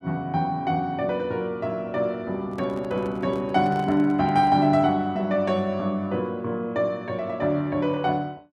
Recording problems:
handling noise; from 2.5 to 4.5 s; peak -10 dB vs average level

